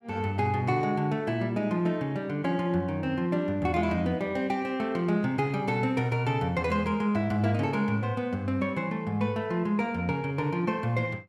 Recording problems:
none

